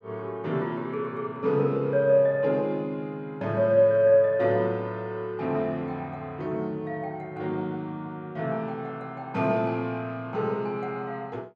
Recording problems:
none

